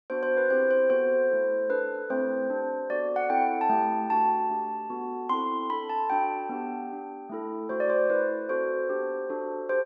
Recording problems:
none

